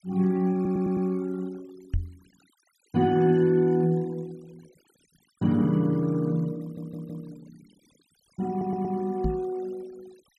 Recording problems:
denoising artefacts; signal-to-artefact ratio 28 dB
audio stuttering; at 0.5 s, at 6.5 s and at 8.5 s
microphone thump; at 2 s and at 9 s; peak +1 dB vs average level

